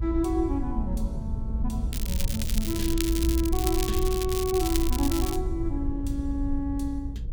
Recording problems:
rumble; below 74 Hz, SNR 2 dB
crackling; from 2 to 5.5 s; loose cable, SNR 4 dB

